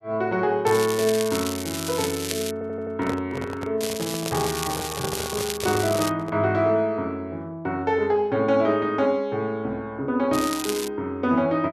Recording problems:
crackling; from 0.5 to 2.5 s, from 4 to 6 s and at 10 s; loose cable, SNR 7 dB
microphone handling noise; from 2.5 to 6.5 s; peak -1 dB vs average level
audio stuttering; at 2.5 s

